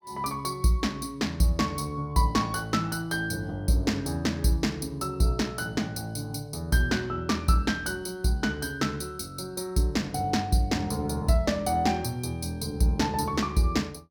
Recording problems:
none

